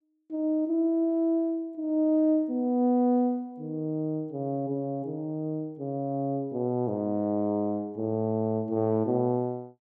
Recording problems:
none

